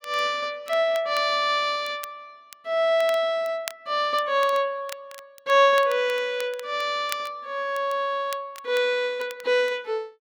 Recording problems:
crackling; vinyl, SNR 19 dB

